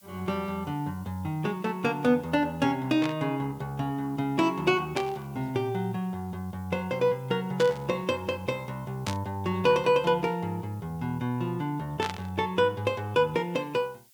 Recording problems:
background hiss; slope +6 dB per octave, SNR 28 dB
static burst; 5 times, first at 3 s; peak -1 dB vs average level

